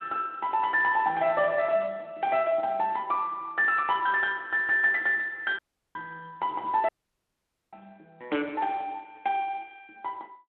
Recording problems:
telephone audio; 240 Hz to 3.5 kHz, Speex
dropout; at 5.5 s and at 7 s for 1 s

